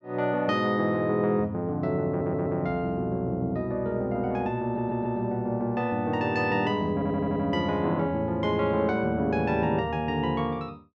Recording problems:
audio stuttering; at 2 s, at 4.5 s and at 7 s

